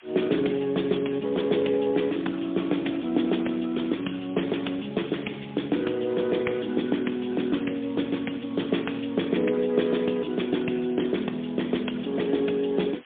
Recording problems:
telephone audio; 190 Hz to 3.6 kHz, AMR-NB, then MP3
background hiss; SNR 23 dB

